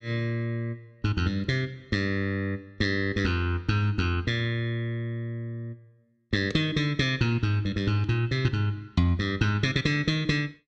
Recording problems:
none

